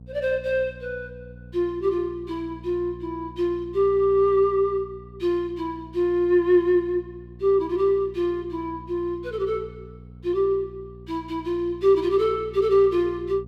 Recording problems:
hum; 60 Hz, harmonics up to 540 Hz, SNR 20 dB

